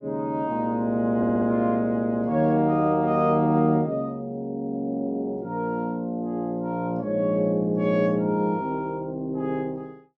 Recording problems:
audio stuttering; at 1 s

